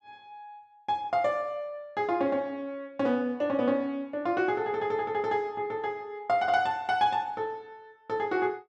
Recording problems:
none

